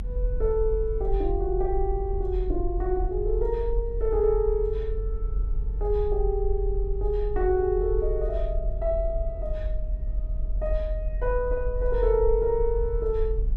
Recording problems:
rumble; below 46 Hz, strongest tone 42 Hz, SNR 3 dB

